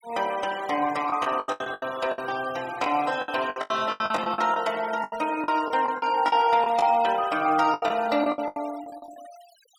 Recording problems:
denoising artefacts; signal-to-artefact ratio 19 dB
lost packets; 16% of the sound replaced, filled with the last packet

